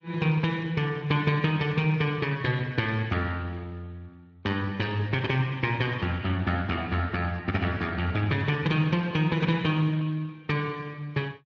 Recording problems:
lossy codec; MP3, then Speex, log-spectral distance 3 dB

